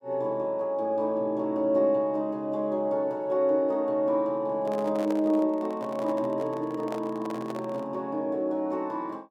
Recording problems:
handling noise; from 4.5 to 8 s; peak -5 dB vs average level

